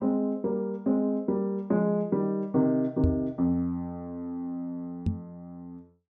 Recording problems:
microphone bump; at 3 s and at 5 s; peak +6 dB vs average level

